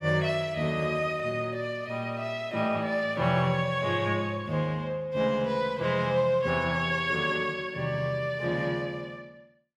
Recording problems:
none

